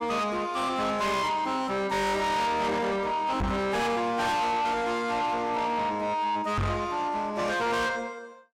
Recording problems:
distortion; soft clipping, signal-to-distortion ratio 6 dB
microphone thump; at 3.5 s and at 6.5 s; peak +2 dB vs average level

